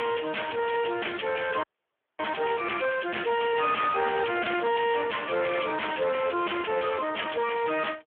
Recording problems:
phone line; 300 Hz to 3.2 kHz, Speex
distorted audio; hard clipping, signal-to-distortion ratio 5 dB
audio freezing; at 1.5 s for 0.5 s

